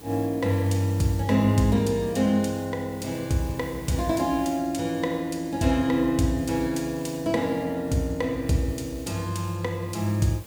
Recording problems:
hum; 60 Hz, harmonics up to 540 Hz, SNR 27 dB
background hiss; SNR 22 dB

